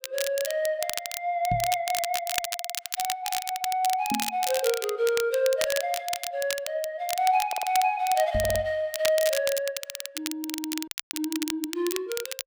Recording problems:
crackling; vinyl, SNR 5 dB
microphone bump; at 1.5 s, at 4 s and at 8.5 s; peak 0 dB vs average level
audio stuttering; 4 times, first at 2.5 s
audio cutting out; at 11 s

